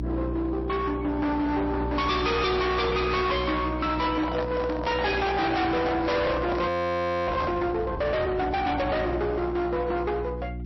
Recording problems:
lossy codec; MP3, then MP3, log-spectral distance 3 dB, nothing above 5.7 kHz
distorted audio; hard clipping, uneven, signal-to-distortion ratio 6 dB
hum; 60 Hz, harmonics up to 360 Hz, SNR 8 dB
handling noise; from 4 to 7.5 s; peak -1 dB vs average level
frozen audio; at 6.5 s for 0.5 s

